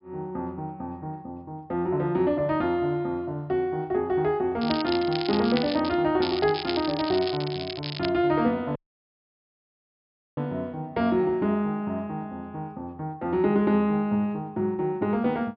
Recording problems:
treble cut off; nothing above 5.5 kHz
crackle; from 4.5 to 6 s and from 6 to 8 s; loose cable, SNR 9 dB
dropout; at 9 s for 1.5 s

